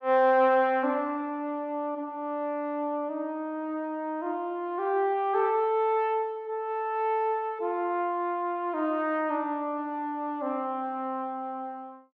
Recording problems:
none

